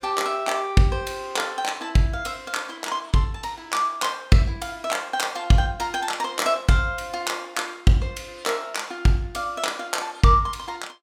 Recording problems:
none

